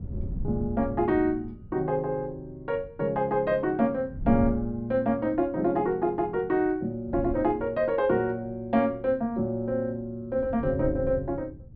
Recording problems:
treble cut off; nothing above 5 kHz
wind noise; below 130 Hz, SNR 12 dB

